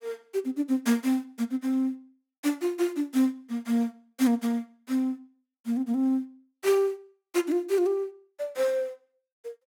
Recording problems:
none

